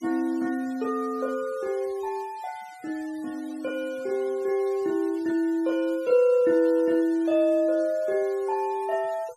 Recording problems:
noise reduction artefacts; signal-to-artefact ratio 25 dB

